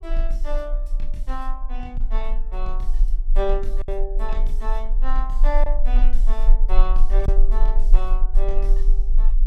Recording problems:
low-frequency rumble; below 32 Hz, strongest tone 18 Hz, SNR -9 dB
lost packets; 1.3% of the sound replaced, filled with silence

